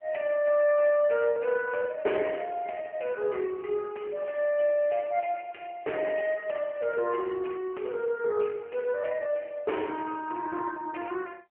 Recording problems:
telephone audio; 320 Hz to 3 kHz, AMR-NB

